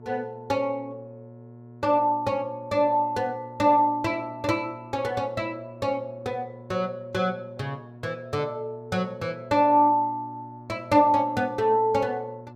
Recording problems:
hum; 60 Hz, harmonics up to 1.1 kHz, SNR 20 dB

